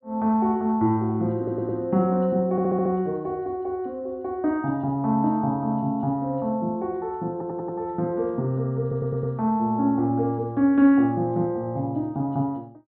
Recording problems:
treble missing; nothing above 4.1 kHz
audio stuttering; 4 times, first at 1.5 s

